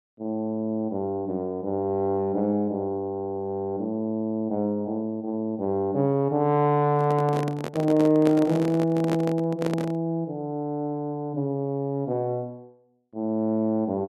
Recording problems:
handling noise; from 7 to 10 s; peak -1 dB vs average level

